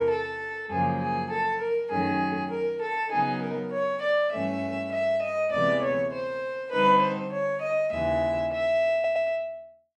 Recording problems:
stutter; at 9 s

